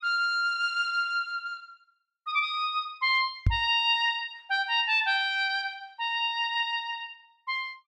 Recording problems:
knock on the microphone; at 3.5 s; peak +6 dB vs average level

